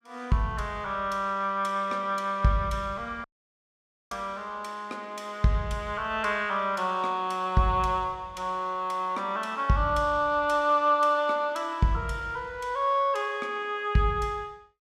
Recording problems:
dropout; at 3 s for 1 s

